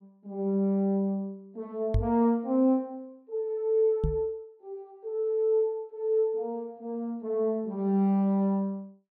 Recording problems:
knock on the microphone; at 2 s and at 4 s; peak +4 dB vs average level

